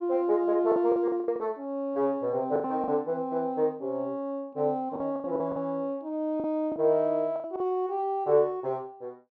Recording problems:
packet loss; 8% of the sound replaced, filled with the last packet

